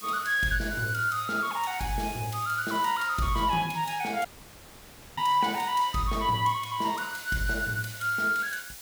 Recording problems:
background hiss; slope +1 dB per octave, SNR 15 dB
audio cutting out; at 4.5 s for 1 s

